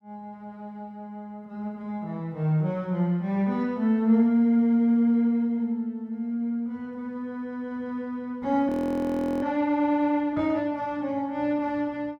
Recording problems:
frozen audio; at 8.5 s for 0.5 s

